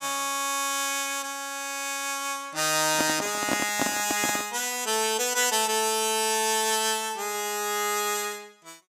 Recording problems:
handling noise; from 3 to 4.5 s; peak +3 dB vs average level

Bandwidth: 15.5 kHz